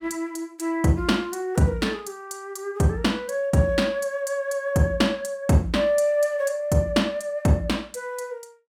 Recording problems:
none

